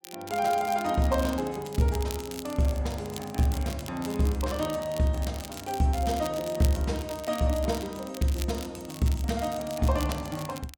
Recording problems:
crackle; vinyl, SNR 14 dB

